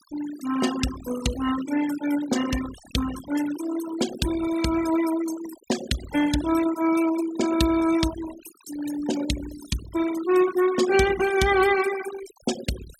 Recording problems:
denoising artefacts; signal-to-artefact ratio 11 dB

